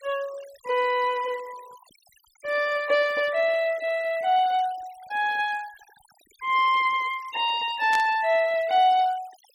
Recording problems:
noise reduction artefacts; signal-to-artefact ratio 23 dB
burst of static; at 8 s; peak -5 dB vs average level

